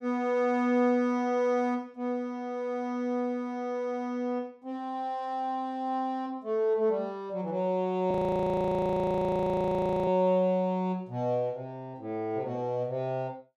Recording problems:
frozen audio; at 8 s for 2 s

